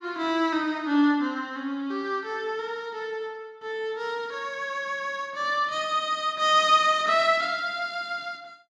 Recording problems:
none

